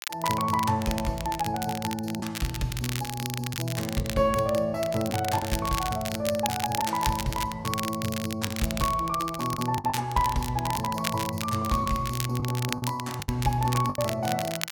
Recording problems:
crackle; vinyl, SNR 7 dB
packet loss; 4% of the sound replaced, filled with the last packet

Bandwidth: 17 kHz